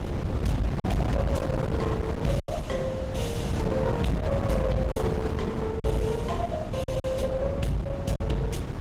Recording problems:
codec artefacts; Opus, log-spectral distance 3 dB, nothing above 18.3 kHz
distortion; hard clipping, signal-to-distortion ratio 10 dB
rumble; below 210 Hz, SNR 8 dB
wind noise; below 400 Hz, SNR 2 dB
lost packets; 4% of the sound replaced, filled with silence

